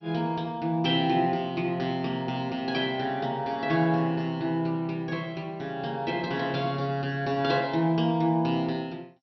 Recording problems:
codec artefacts; MP2, log-spectral distance 2 dB, nothing above 5.5 kHz

